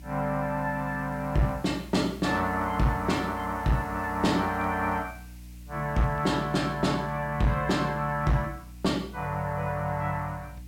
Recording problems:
distortion; hard clipping, signal-to-distortion ratio 12 dB
hum; 60 Hz, harmonics up to 300 Hz, SNR 17 dB
background hiss; SNR 26 dB

